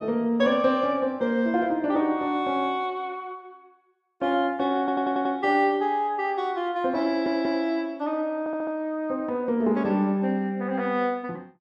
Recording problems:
stutter; at 5 s, at 7 s and at 8.5 s

